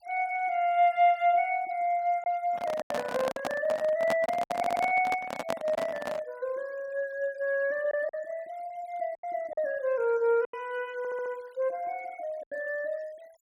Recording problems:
denoising artefacts; signal-to-artefact ratio 27 dB
packet loss; 5% of the sound replaced, filled with silence
handling noise; from 2.5 to 6.5 s; peak +3 dB vs average level
stutter; at 4.5 s and at 11 s

